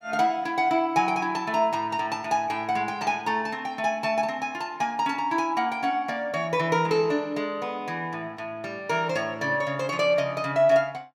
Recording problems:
none

